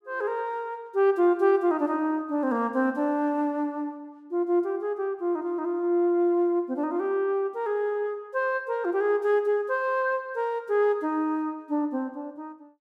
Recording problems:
none

